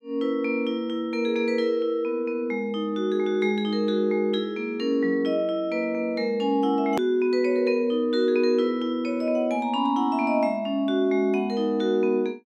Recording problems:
click at an edit; at 7 s

